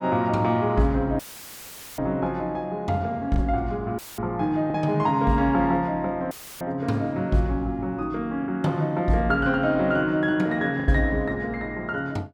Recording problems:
lost packets; 1.8% of the sound replaced, filled with the last packet
audio cutting out; at 1 s for 1 s, at 4 s and at 6.5 s; filled with static

